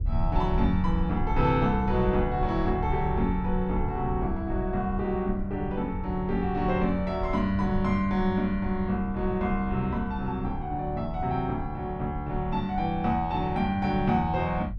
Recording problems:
low-frequency rumble; below 82 Hz, SNR 8 dB

